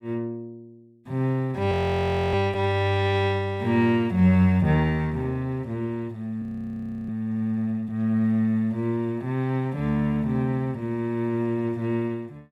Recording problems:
frozen audio; at 1.5 s for 0.5 s and at 6.5 s for 0.5 s

